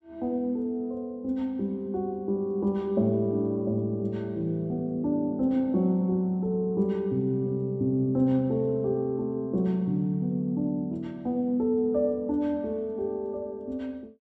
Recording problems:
none

